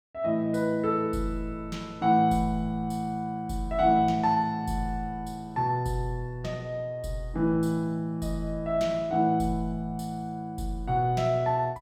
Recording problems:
none

